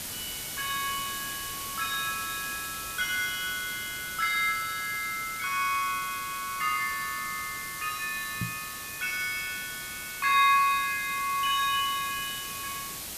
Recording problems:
hiss; slope 0 dB per octave, SNR 7 dB
knock on the microphone; at 8.5 s; peak 0 dB vs average level

